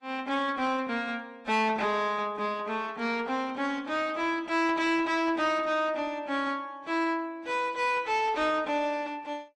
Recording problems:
codec artefacts; AAC, log-spectral distance 2 dB
distortion; soft clipping, signal-to-distortion ratio 11 dB

